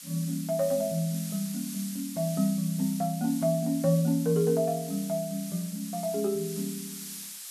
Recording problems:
background hiss; slope +5 dB per octave, SNR 11 dB

